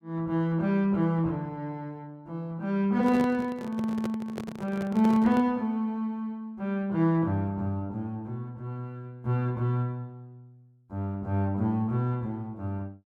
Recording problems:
microphone handling noise; from 3 to 5.5 s; peak -2 dB vs average level

